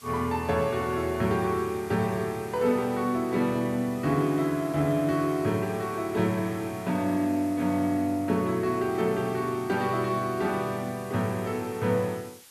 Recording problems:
hiss; slope +2 dB per octave, SNR 21 dB

